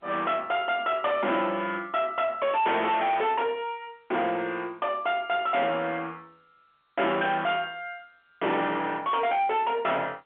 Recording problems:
telephone audio; 220 Hz to 3.6 kHz, G.711
distortion; soft clipping, signal-to-distortion ratio 7 dB

